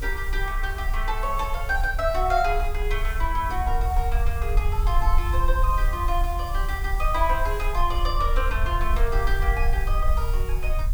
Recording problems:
hiss; slope -2 dB per octave, SNR 17 dB
low-frequency rumble; below 52 Hz, SNR 0 dB

